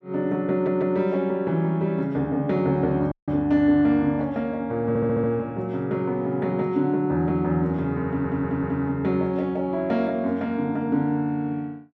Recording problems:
audio stuttering; at 0.5 s, at 5 s and at 8 s
audio cutting out; at 3 s

